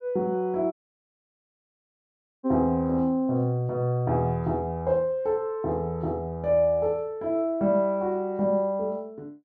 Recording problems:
audio cutting out; at 0.5 s for 1.5 s

